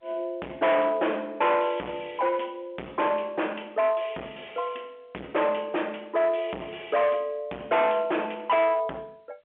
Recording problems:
phone line; 370 Hz to 3.4 kHz, G.711
distortion; hard clipping, uneven, signal-to-distortion ratio 7 dB

